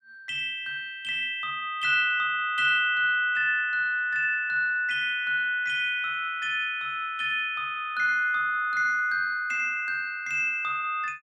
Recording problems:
none

